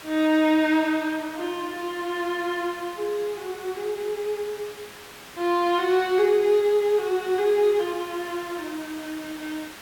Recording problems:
hiss; SNR 17 dB

